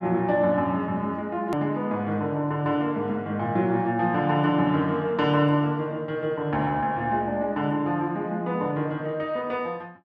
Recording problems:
click at an edit; at 1.5 s

